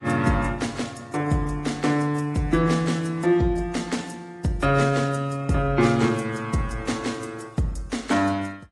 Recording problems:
lossy codec; AAC, then AAC, log-spectral distance 3 dB, nothing above 10.4 kHz

